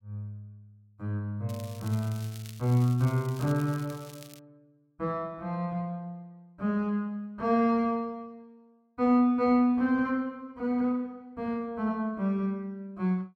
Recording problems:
crackle; from 1.5 to 4.5 s; loose cable, SNR 20 dB

